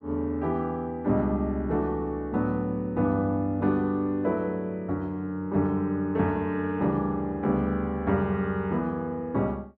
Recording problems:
none

